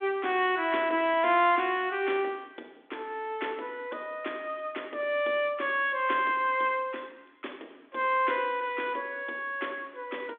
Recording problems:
telephone audio; 240 Hz to 3.6 kHz, G.726

